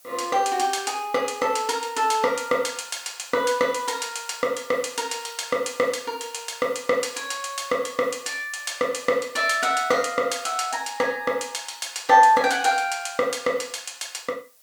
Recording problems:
hiss; SNR 26 dB

